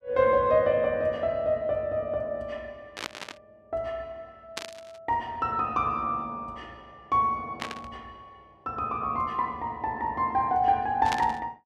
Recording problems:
burst of static; 4 times, first at 3 s; peak 0 dB vs average level

